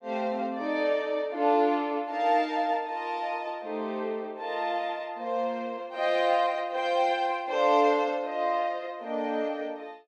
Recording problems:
none

